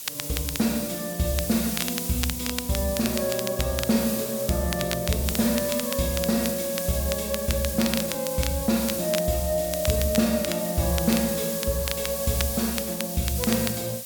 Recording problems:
background hiss; SNR 4 dB
crackle; vinyl, SNR 8 dB

